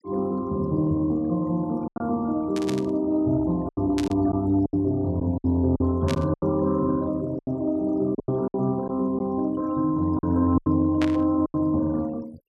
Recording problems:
noise reduction artefacts; signal-to-artefact ratio 26 dB
packet loss; 8% of the sound replaced, filled with silence
burst of static; 4 times, first at 2.5 s; peak -3 dB vs average level

